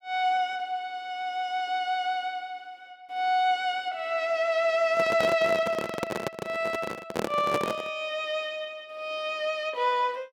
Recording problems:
handling noise; from 5 to 8 s; peak +3 dB vs average level

